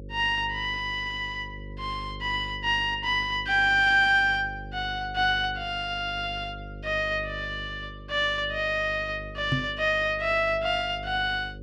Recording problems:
hum; 50 Hz, harmonics up to 550 Hz, SNR 16 dB
microphone bump; at 9.5 s; peak +2 dB vs average level

